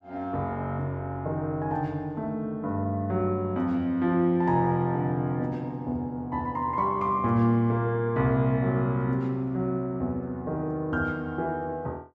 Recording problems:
none

